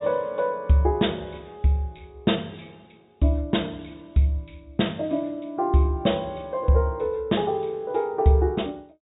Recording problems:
treble cut off; nothing above 4 kHz

